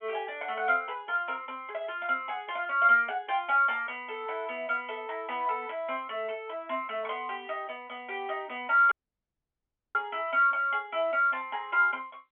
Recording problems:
telephone audio; 240 Hz to 3.5 kHz, G.711
dropout; at 9 s for 1 s

